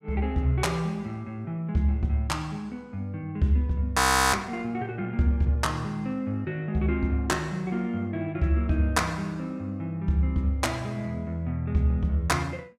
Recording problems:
frozen audio; at 4 s

